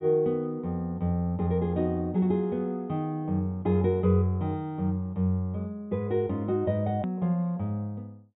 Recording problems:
treble cut off; nothing above 4 kHz
edit click; at 7 s

